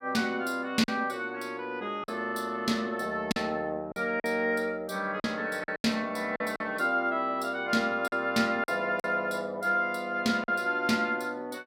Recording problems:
lost packets; 5% of the sound replaced, filled with silence

